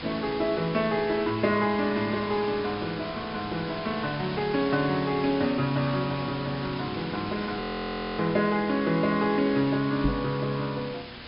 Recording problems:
treble cut off; nothing above 5.5 kHz
electrical hum; 60 Hz, harmonics up to 1.2 kHz, SNR 27 dB
background hiss; SNR 11 dB
frozen audio; at 7.5 s for 0.5 s
microphone bump; at 10 s; peak +4 dB vs average level

